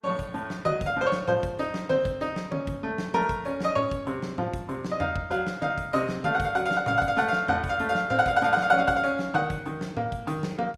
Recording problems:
lossy compression; Opus, log-spectral distance 2 dB, nothing above 17.7 kHz

